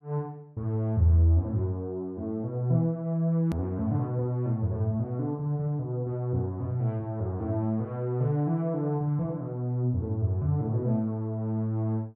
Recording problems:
hard cut with a click; at 3.5 s

